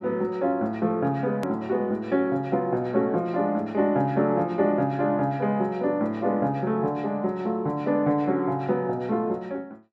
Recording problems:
hard cut with a click; at 1.5 s

